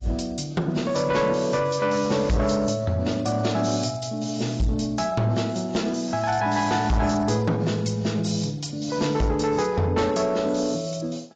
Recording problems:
lossy compression; AAC, log-spectral distance 4 dB, nothing above 7.3 kHz
distortion; soft clipping, signal-to-distortion ratio 11 dB

